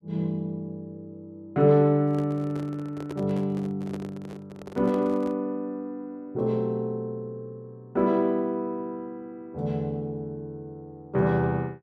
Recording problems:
microphone handling noise; from 2 to 5.5 s; peak -5 dB vs average level

